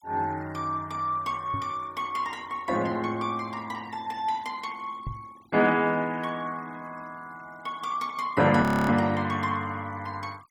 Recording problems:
denoising artefacts; signal-to-artefact ratio 25 dB
knock on the microphone; at 1.5 s and at 5 s; peak -3 dB vs average level
frozen audio; at 8.5 s

